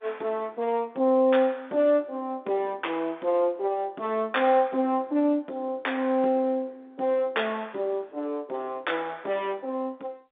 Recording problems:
telephone audio; 220 Hz to 3.7 kHz, G.711

